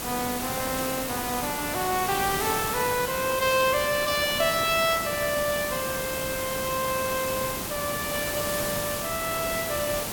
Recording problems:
background hiss; slope -3 dB per octave, SNR 3 dB

